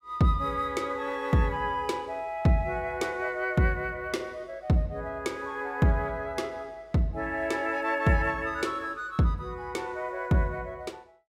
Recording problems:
none

